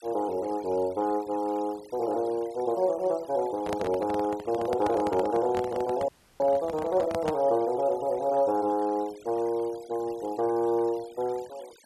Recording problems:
noise reduction artefacts; signal-to-artefact ratio 23 dB
handling noise; from 3.5 to 7.5 s; peak -1 dB vs average level
audio freezing; at 6 s

